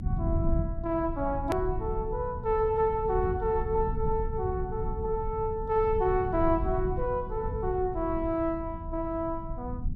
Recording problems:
rumble; below 110 Hz, SNR 6 dB
hard cut with a click; at 1.5 s

